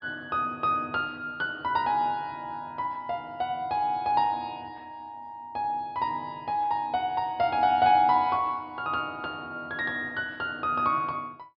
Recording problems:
treble cut off; nothing above 5 kHz

